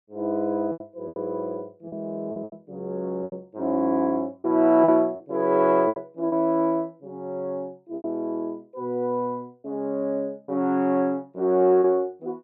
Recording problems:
lost packets; 7% of the sound replaced, filled with repeated pitch periods

